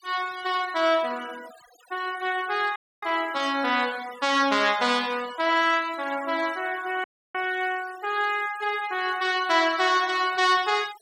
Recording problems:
noise reduction artefacts; signal-to-artefact ratio 19 dB
audio cutting out; at 3 s and at 7 s

